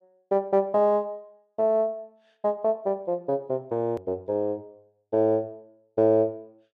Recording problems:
click at an edit; at 4 s

